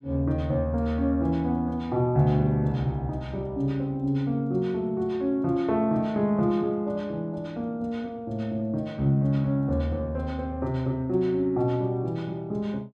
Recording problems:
none

